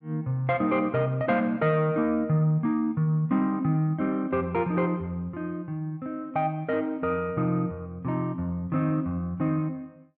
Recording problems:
none

